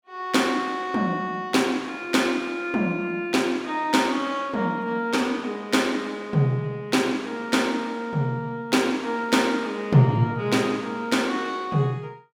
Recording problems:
none

